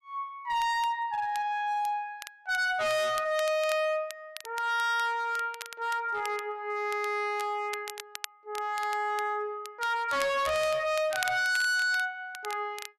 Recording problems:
distortion; hard clipping, signal-to-distortion ratio 6 dB
crackle; vinyl, SNR 15 dB

